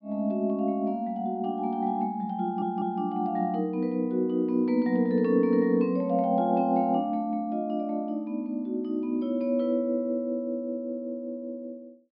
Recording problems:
treble cut off; nothing above 5.5 kHz
stutter; at 2.5 s

